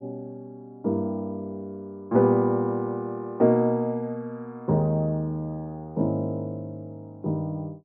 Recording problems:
none

